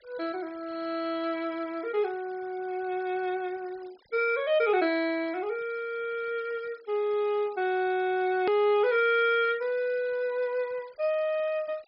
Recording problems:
treble missing; nothing above 5.5 kHz
denoising artefacts; signal-to-artefact ratio 25 dB
click at an edit; at 8.5 s

